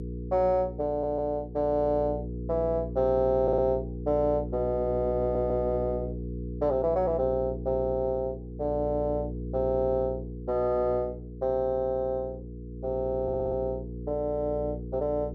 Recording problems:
hum; 60 Hz, harmonics up to 480 Hz, SNR 9 dB
stutter; 4 times, first at 1 s

